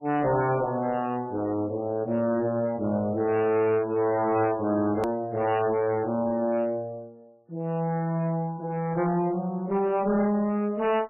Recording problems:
lossy compression; MP3, log-spectral distance 2 dB, nothing above 13.1 kHz
distorted audio; hard clipping, uneven, signal-to-distortion ratio 10 dB
click at an edit; at 5 s

